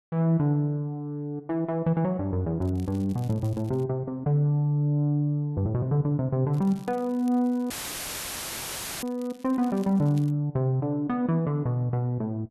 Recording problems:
crackling; from 2.5 to 4 s and from 6.5 to 10 s; loose cable, SNR 28 dB
dropout; at 7.5 s for 1.5 s; filled with static

